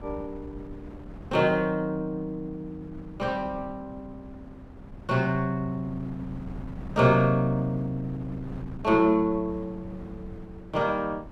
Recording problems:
wind on the microphone; below 230 Hz, SNR 17 dB

